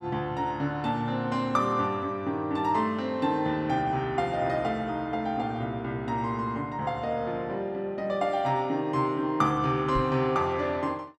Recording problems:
microphone thump; at 10 s; peak -1 dB vs average level

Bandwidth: 12.5 kHz